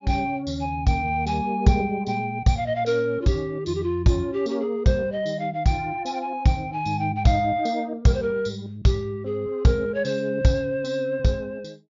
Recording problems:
low-pass filter; nothing above 7.1 kHz

